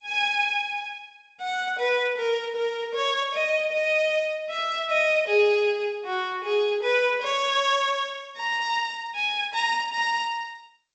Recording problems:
codec artefacts; G.722, log-spectral distance 2 dB, nothing above 7.6 kHz

